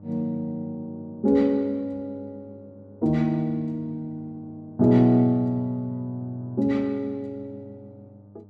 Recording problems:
hum; 50 Hz, harmonics up to 900 Hz, SNR 24 dB

